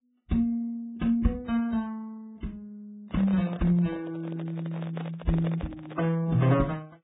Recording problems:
codec artefacts; AAC, then Vorbis, log-spectral distance 2 dB, nothing above 3.8 kHz
microphone handling noise; from 3 to 6 s; peak -4 dB vs average level

